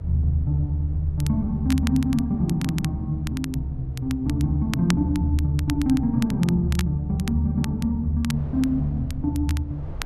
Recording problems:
rumble; below 98 Hz, SNR 15 dB
wind on the microphone; below 620 Hz, SNR 28 dB
crackling; vinyl, SNR 16 dB

